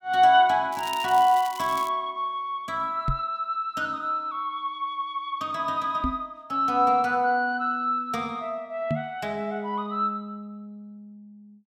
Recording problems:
crackle; from 0.5 to 2 s; loose cable, SNR 16 dB
knock on the microphone; at 3 s, at 6 s and at 9 s; peak +1 dB vs average level

